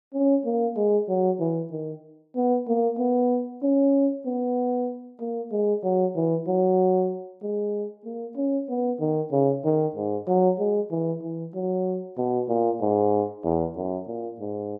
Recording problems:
none

